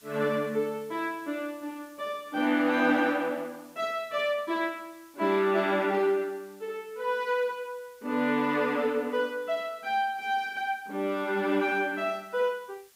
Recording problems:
background hiss; slope +1 dB per octave, SNR 28 dB

